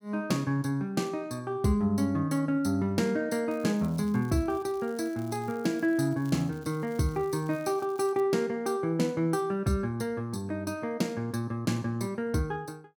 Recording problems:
crackling; from 3.5 to 8 s; loose cable, SNR 26 dB

